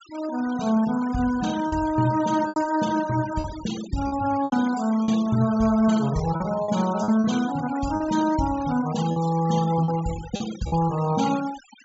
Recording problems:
low-pass filter; nothing above 8 kHz
noise reduction artefacts; signal-to-artefact ratio 16 dB
lost packets; 6% of the sound replaced, filled with repeated pitch periods

